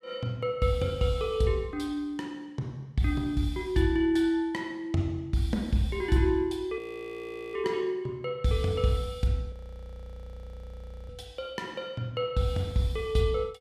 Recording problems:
audio freezing; at 7 s for 1 s and at 9.5 s for 1.5 s

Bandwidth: 14.5 kHz